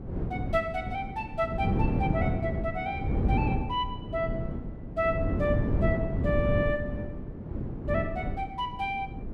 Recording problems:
wind noise; below 250 Hz, SNR 0 dB

